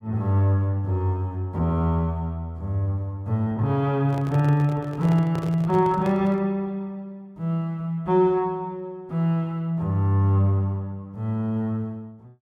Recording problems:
handling noise; from 4 to 6.5 s; peak -6 dB vs average level

